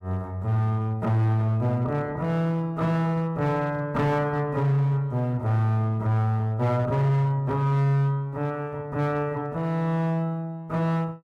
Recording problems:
distorted audio; hard clipping, signal-to-distortion ratio 12 dB

